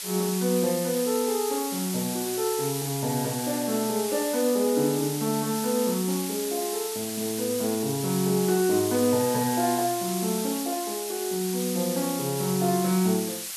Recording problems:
hiss; slope +3 dB per octave, SNR 6 dB

